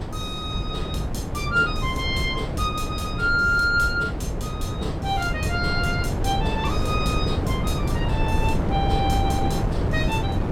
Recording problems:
wind noise; below 310 Hz, SNR 1 dB

